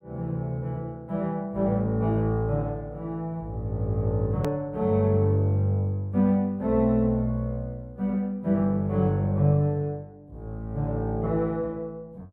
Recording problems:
hard cut with a click; at 4.5 s

